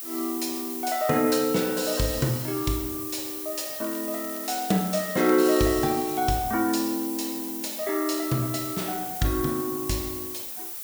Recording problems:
background hiss; slope +1 dB per octave, SNR 6 dB
crackling; from 4 to 6 s; loose cable, SNR 20 dB

